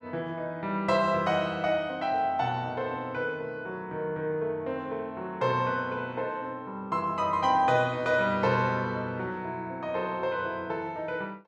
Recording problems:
none

